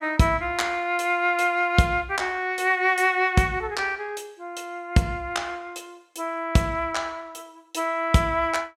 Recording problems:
none

